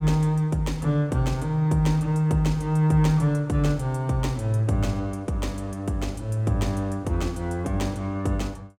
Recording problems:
none

